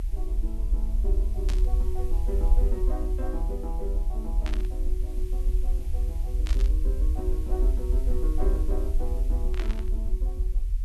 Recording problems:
hiss; slope +2 dB per octave, SNR 16 dB
rumble; below 50 Hz, SNR -10 dB
burst of static; 4 times, first at 1.5 s; peak +3 dB vs average level

